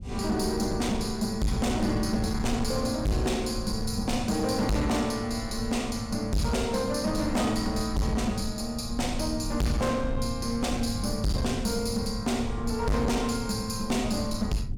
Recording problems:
distorted audio; hard clipping, signal-to-distortion ratio 6 dB
low-frequency rumble; below 120 Hz, SNR 9 dB

